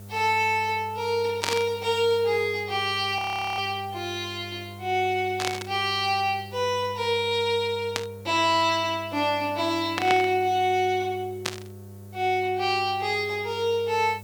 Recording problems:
electrical hum; 50 Hz, harmonics up to 700 Hz, SNR 18 dB
background hiss; SNR 27 dB
burst of static; 5 times, first at 1.5 s; peak +3 dB vs average level
audio freezing; at 3 s

